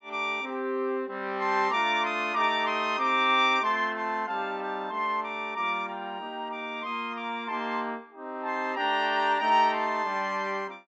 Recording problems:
treble missing; nothing above 8 kHz

